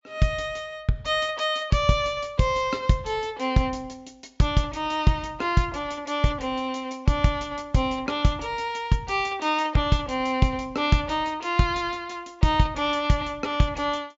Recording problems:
low-pass filter; nothing above 7.5 kHz

